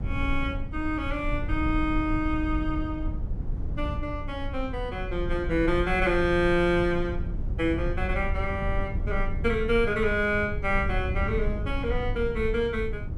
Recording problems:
low-frequency rumble; below 86 Hz, SNR 5 dB

